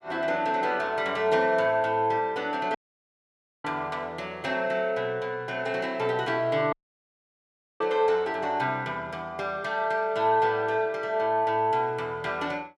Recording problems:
dropout; at 3 s for 1 s and at 6.5 s for 1 s

